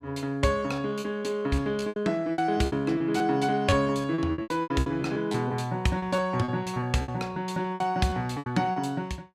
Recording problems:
lost packets; 16% of the sound replaced, filled with repeated pitch periods

